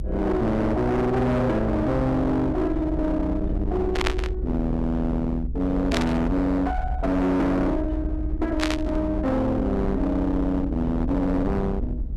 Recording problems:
distortion; hard clipping, uneven, signal-to-distortion ratio 5 dB
low-frequency rumble; below 110 Hz, SNR 6 dB
static burst; at 4 s, at 6 s and at 8.5 s; peak +3 dB vs average level

